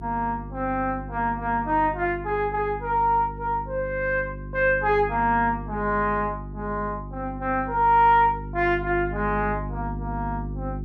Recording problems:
hum; 50 Hz, harmonics up to 400 Hz, SNR 11 dB

